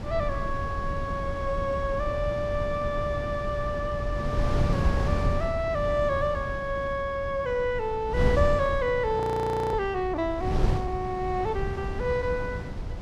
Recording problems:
wind on the microphone; below 170 Hz, SNR 3 dB
frozen audio; at 9 s for 0.5 s

